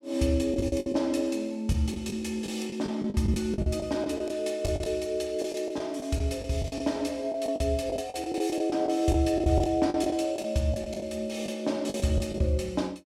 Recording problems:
packet loss; 12% of the sound replaced, filled with the last packet

